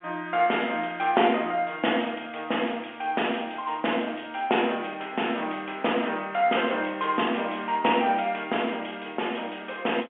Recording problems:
telephone audio; 280 Hz to 3.3 kHz, G.711

